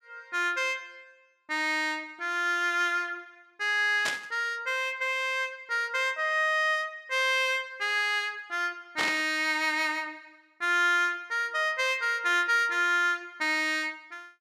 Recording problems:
burst of static; at 4 s and at 9 s; peak +1 dB vs average level

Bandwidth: 14.5 kHz